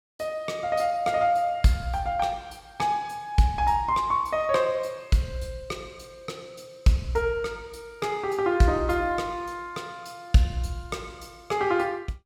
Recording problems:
none

